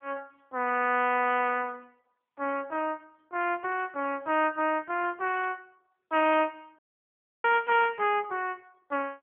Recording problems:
phone line; 260 Hz to 3.2 kHz, AMR-NB
audio cutting out; at 7 s for 0.5 s

